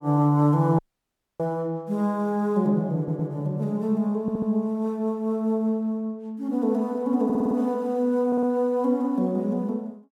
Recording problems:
dropout; at 1 s for 0.5 s
stutter; 4 times, first at 3 s

